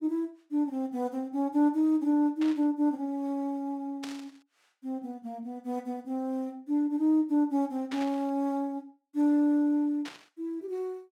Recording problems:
burst of static; 4 times, first at 2.5 s; peak -7 dB vs average level

